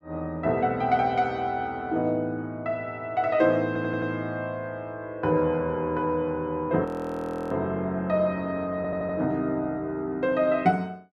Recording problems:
stutter; at 3.5 s and at 9 s
audio freezing; at 7 s for 0.5 s

